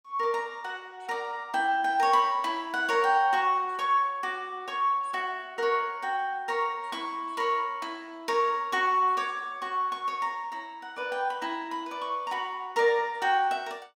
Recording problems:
none

